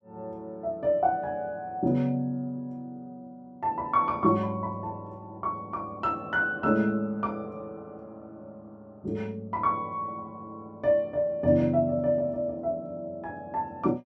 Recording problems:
none

